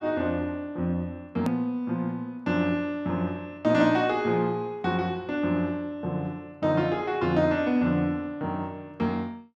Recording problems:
edit click; at 1.5 s

